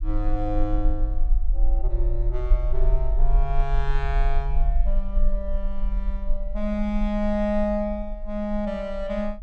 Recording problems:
low-frequency rumble; below 40 Hz, strongest tone 22 Hz, SNR -2 dB

